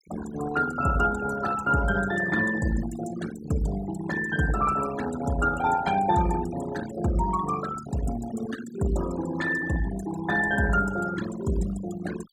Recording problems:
noise reduction artefacts; signal-to-artefact ratio 11 dB

